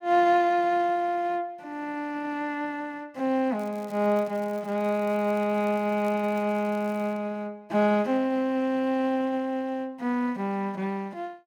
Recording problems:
crackle; from 3.5 to 7 s; loose cable, SNR 28 dB

